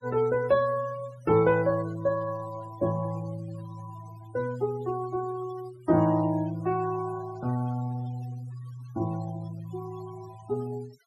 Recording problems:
noise reduction artefacts; signal-to-artefact ratio 20 dB

